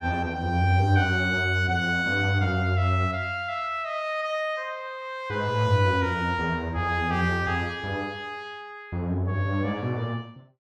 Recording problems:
none

